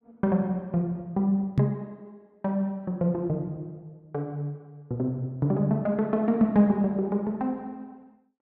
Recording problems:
microphone bump; at 1.5 s; peak +8 dB vs average level

